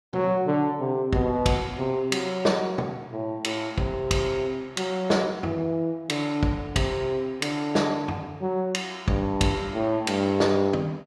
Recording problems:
none

